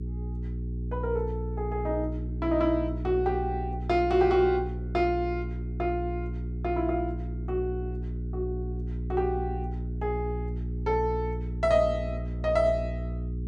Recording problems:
hum; 60 Hz, harmonics up to 420 Hz, SNR 5 dB

